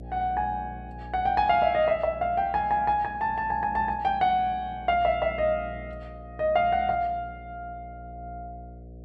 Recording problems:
hum; 60 Hz, harmonics up to 720 Hz, SNR 18 dB

